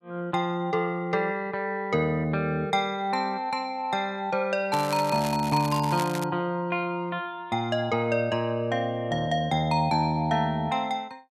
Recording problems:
crackle; from 4.5 to 6 s; loose cable, SNR 12 dB

